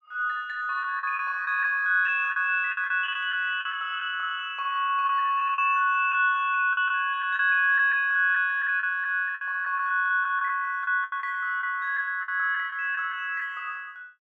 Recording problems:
lost packets; 7% of the sound replaced, filled with the last packet

